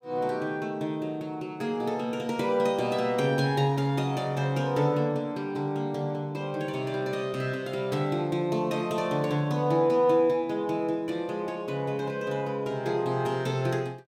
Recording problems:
none

